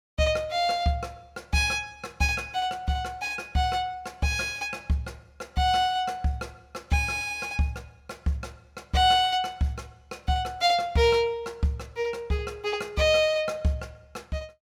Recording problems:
none

